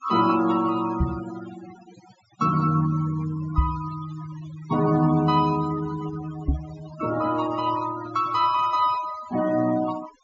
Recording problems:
low-pass filter; nothing above 8 kHz
noise reduction artefacts; signal-to-artefact ratio 15 dB
microphone thump; at 1 s, at 3.5 s and at 6.5 s; peak +6 dB vs average level

